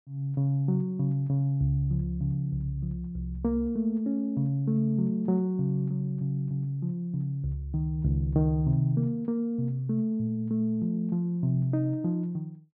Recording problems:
treble cut off; nothing above 5.5 kHz

